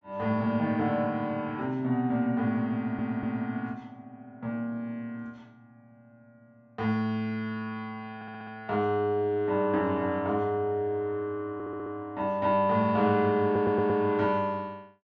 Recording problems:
treble missing; nothing above 8 kHz
stutter; 4 times, first at 3 s

